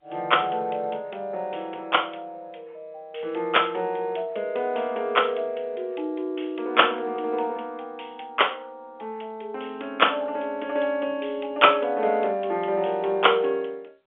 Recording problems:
phone line; 240 Hz to 3.2 kHz, G.711

